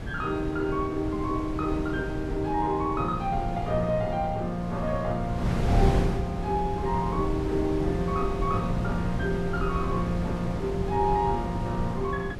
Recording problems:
wind noise; below 220 Hz, SNR 4 dB

